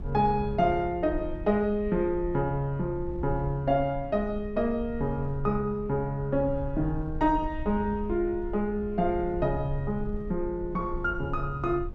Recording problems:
wind noise; below 74 Hz, SNR 11 dB

